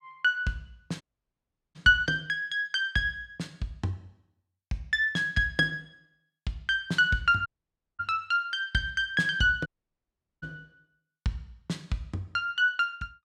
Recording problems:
dropout; at 1 s for 0.5 s, at 7.5 s for 0.5 s and at 9.5 s for 1 s

